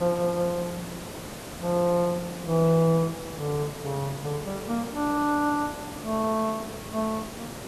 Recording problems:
background hiss; slope -5 dB per octave, SNR 11 dB

